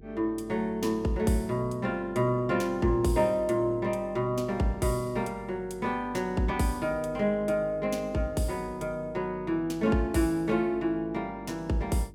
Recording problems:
hum; 50 Hz, harmonics up to 450 Hz, SNR 21 dB

